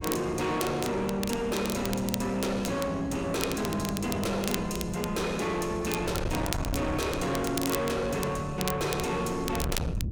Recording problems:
distortion; soft clipping, signal-to-distortion ratio 8 dB
wind noise; below 280 Hz, SNR 8 dB
crackling; vinyl, SNR 9 dB

